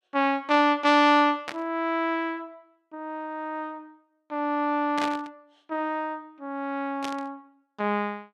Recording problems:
static burst; at 1.5 s, at 5 s and at 7 s; peak -3 dB vs average level

